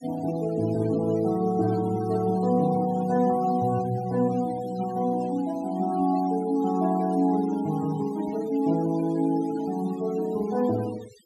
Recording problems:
noise reduction artefacts; signal-to-artefact ratio 20 dB

